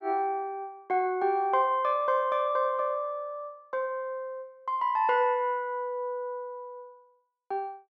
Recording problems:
none

